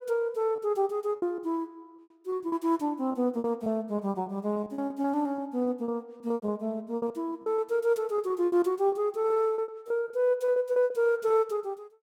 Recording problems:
lost packets; 13% of the sound replaced, filled with repeated pitch periods

